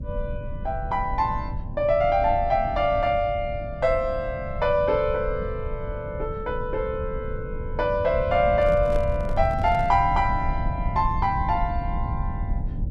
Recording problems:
hum; 50 Hz, harmonics up to 600 Hz, SNR 20 dB
low-frequency rumble; below 110 Hz, SNR 8 dB
microphone handling noise; from 8.5 to 10 s; peak -7 dB vs average level

